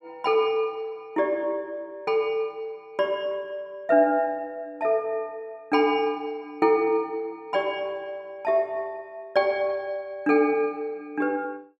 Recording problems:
none

